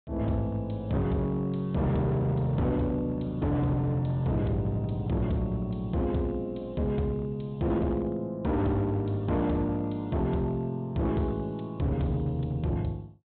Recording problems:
treble cut off; nothing above 4 kHz
distortion; hard clipping, signal-to-distortion ratio 11 dB

